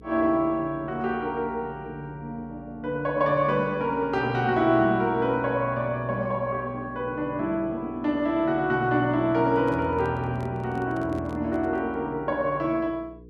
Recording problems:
electrical hum; 60 Hz, harmonics up to 480 Hz, SNR 22 dB
handling noise; from 9.5 to 12 s; peak -12 dB vs average level

